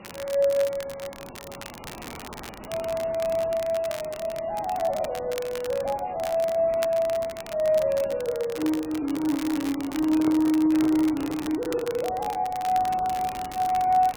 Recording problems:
lossy compression; MP3, log-spectral distance 7 dB
hiss; SNR 17 dB
crackle; vinyl, SNR 16 dB
microphone handling noise; from 8.5 to 12 s; peak -3 dB vs average level

